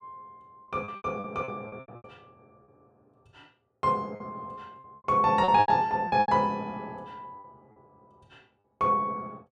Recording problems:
packet loss; 13% of the sound replaced, filled with repeated pitch periods

